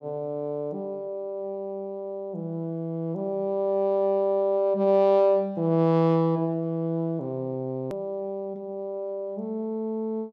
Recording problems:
edit click; at 8 s

